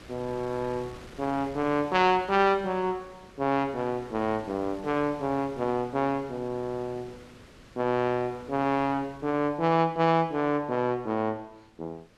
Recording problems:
wind on the microphone; below 2 kHz, SNR 21 dB

